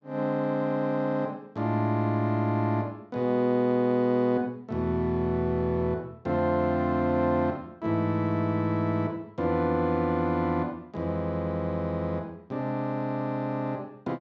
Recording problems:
none

